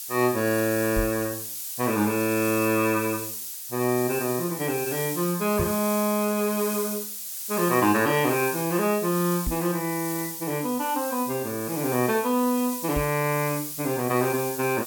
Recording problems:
hiss; SNR 7 dB
knock on the microphone; 4 times, first at 1 s; peak -1 dB vs average level

